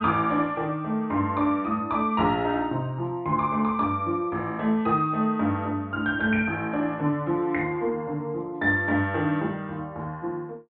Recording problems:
treble missing; nothing above 4 kHz

